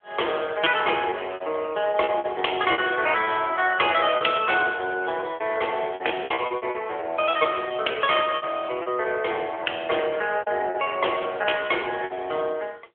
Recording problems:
telephone audio; 320 Hz to 3.3 kHz, AMR-NB
packet loss; 13% of the sound replaced, filled with repeated pitch periods

